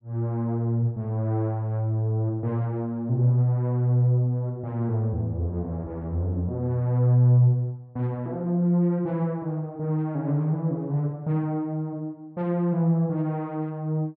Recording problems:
none

